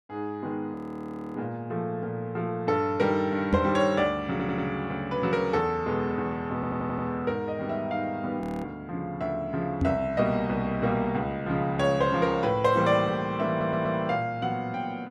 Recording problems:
frozen audio; at 1 s for 0.5 s and at 8.5 s
microphone thump; at 3.5 s and at 10 s; peak +5 dB vs average level
audio stuttering; at 4.5 s, at 6.5 s and at 13 s

